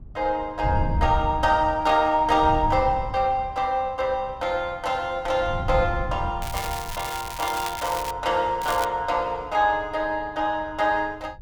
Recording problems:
wind on the microphone; below 110 Hz, SNR 9 dB
crackle; from 6.5 to 8 s and at 8.5 s; loose cable, SNR 11 dB

